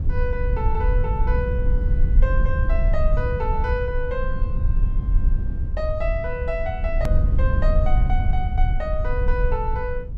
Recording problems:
rumble; below 66 Hz, SNR -5 dB
click at an edit; at 7 s

